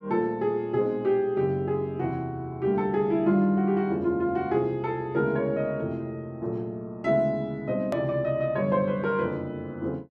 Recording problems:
edit click; at 8 s

